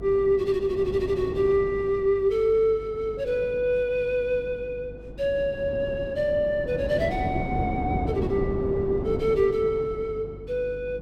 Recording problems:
electrical hum; 50 Hz, harmonics up to 500 Hz, SNR 19 dB
wind noise; below 380 Hz, SNR 8 dB

